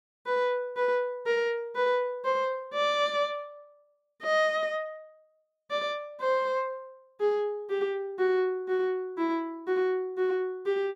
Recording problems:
none

